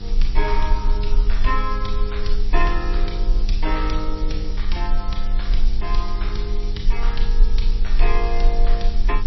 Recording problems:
codec artefacts; MP3, log-spectral distance 2 dB, nothing above 5.7 kHz
hum; 50 Hz, harmonics up to 900 Hz, SNR 7 dB
hiss; slope +4 dB per octave, SNR 13 dB
low-frequency rumble; below 36 Hz, strongest tone 22 Hz, SNR -5 dB

